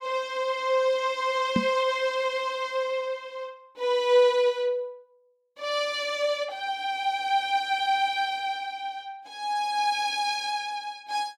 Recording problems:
microphone thump; at 1.5 s; peak +5 dB vs average level

